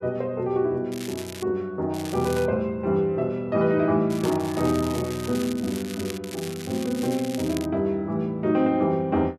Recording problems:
crackling; 4 times, first at 1 s; loose cable, SNR 14 dB

